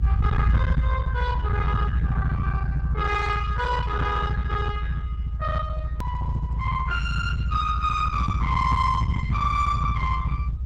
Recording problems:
lossy codec; Opus, log-spectral distance 2 dB
distorted audio; soft clipping, signal-to-distortion ratio 10 dB
low-frequency rumble; below 140 Hz, strongest tone 56 Hz, SNR -1 dB
hard cut with a click; at 6 s

